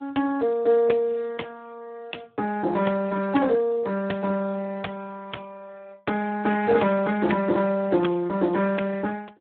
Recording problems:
telephone audio; 220 Hz to 2.8 kHz, Speex

